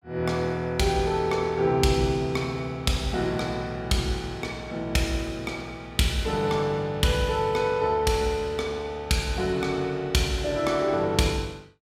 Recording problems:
none

